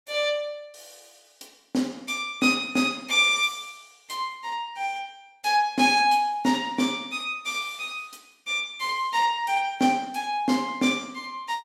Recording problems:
none

